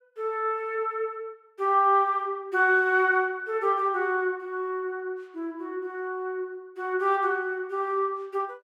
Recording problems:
none

